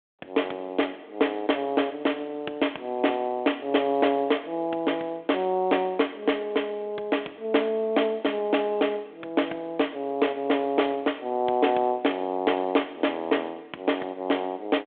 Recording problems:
telephone audio; 240 Hz to 3.5 kHz, G.726

